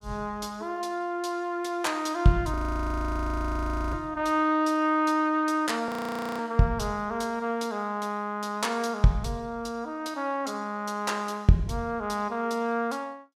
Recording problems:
audio freezing; at 2.5 s for 1.5 s and at 6 s for 0.5 s

